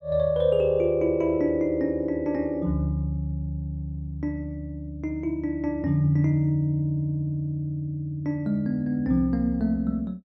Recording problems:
none

